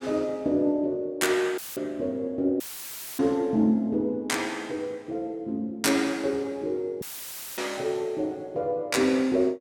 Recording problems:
dropout; at 1.5 s, at 2.5 s for 0.5 s and at 7 s for 0.5 s; filled with static

